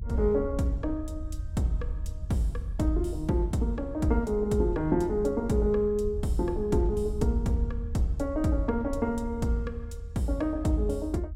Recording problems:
low-frequency rumble; below 78 Hz, SNR 9 dB

